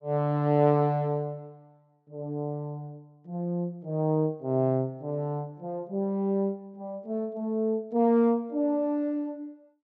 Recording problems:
none

